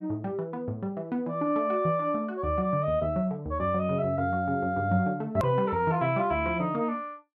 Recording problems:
click at an edit; at 5.5 s

